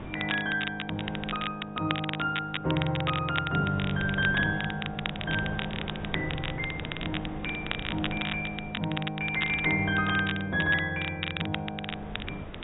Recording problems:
treble missing; nothing above 4 kHz
wind noise; below 620 Hz, SNR 12 dB
crackling; vinyl, SNR 6 dB

